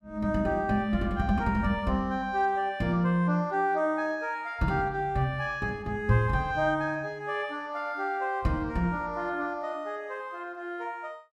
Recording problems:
none

